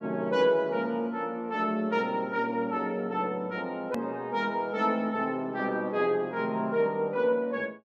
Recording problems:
edit click; at 4 s

